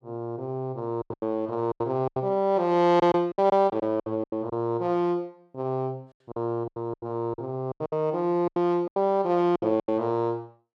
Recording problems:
packet loss; 13% of the sound replaced, filled with silence

